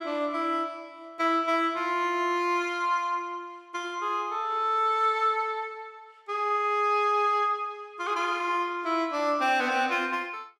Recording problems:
none

